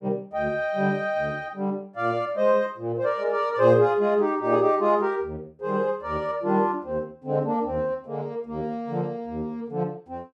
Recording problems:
none

